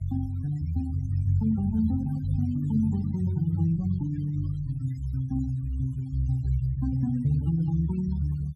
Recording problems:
noise reduction artefacts; signal-to-artefact ratio 23 dB

